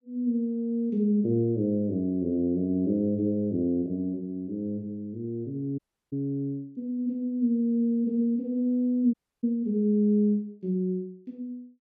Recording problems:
audio cutting out; at 6 s and at 9 s

